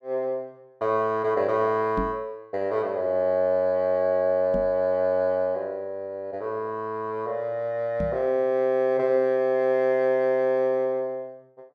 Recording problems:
microphone bump; at 2 s, at 4.5 s and at 8 s; peak -2 dB vs average level

